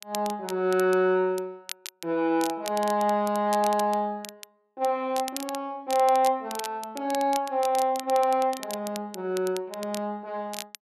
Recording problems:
crackling; vinyl, SNR 14 dB

